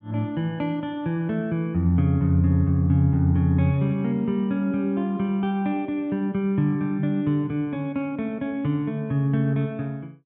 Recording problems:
none

